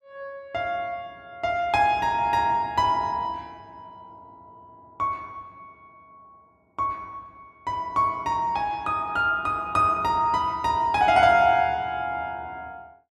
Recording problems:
none

